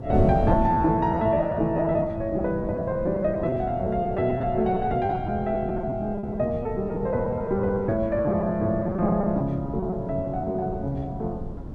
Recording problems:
wind on the microphone; below 240 Hz, SNR 9 dB
lost packets; 12% of the sound replaced, filled with repeated pitch periods

